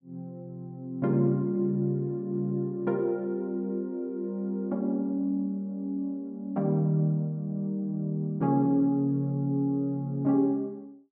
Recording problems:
none

